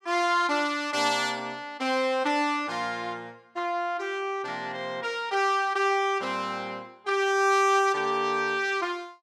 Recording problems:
none

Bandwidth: 15 kHz